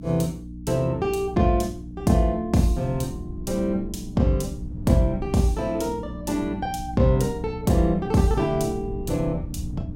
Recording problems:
electrical hum; 60 Hz, harmonics up to 300 Hz, SNR 13 dB
wind on the microphone; below 130 Hz, SNR 14 dB

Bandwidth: 17 kHz